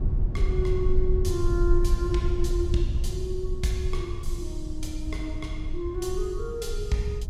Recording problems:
rumble; below 64 Hz, SNR -1 dB

